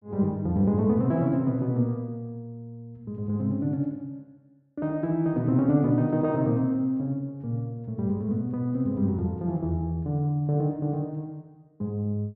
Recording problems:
none

